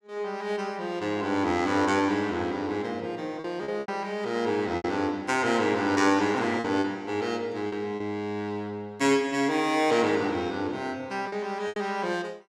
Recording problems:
packet loss; 4% of the sound replaced, filled with repeated pitch periods

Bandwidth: 16 kHz